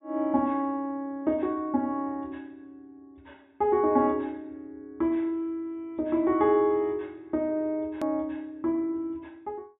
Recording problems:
treble cut off; nothing above 4 kHz
hard cut with a click; at 8 s

